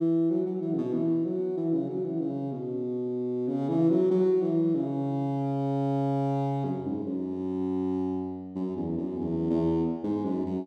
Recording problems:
none

